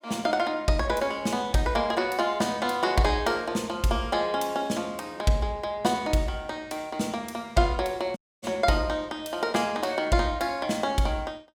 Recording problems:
dropout; at 8 s

